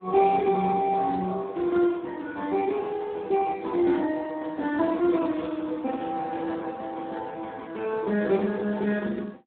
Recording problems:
telephone audio; 190 Hz to 2.8 kHz, Speex

